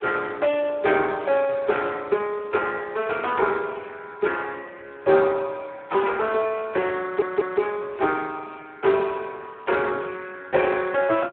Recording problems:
phone line; 320 Hz to 3.5 kHz, Speex
stutter; at 7 s

